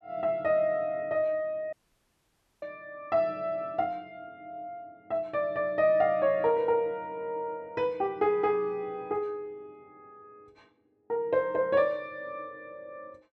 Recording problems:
audio cutting out; at 1.5 s for 1 s

